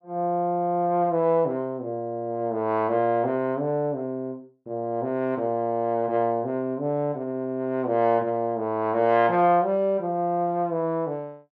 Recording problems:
none

